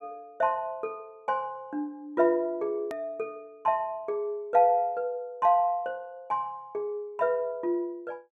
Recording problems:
hard cut with a click; at 3 s

